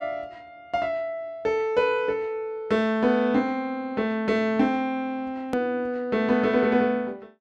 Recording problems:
edit click; at 5.5 s

